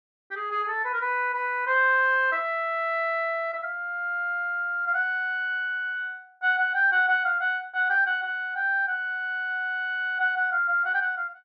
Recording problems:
none

